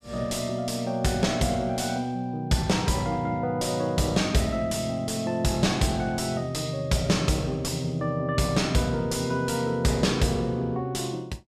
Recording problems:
distortion; soft clipping, signal-to-distortion ratio 9 dB

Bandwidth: 14.5 kHz